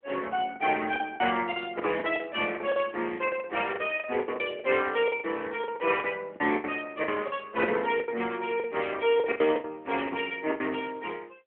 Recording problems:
phone line; 240 Hz to 3.3 kHz, AMR-NB
packet loss; 14% of the sound replaced, filled with the last packet

